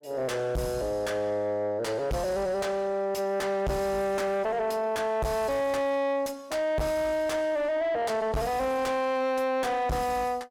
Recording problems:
distorted audio; soft clipping, signal-to-distortion ratio 6 dB

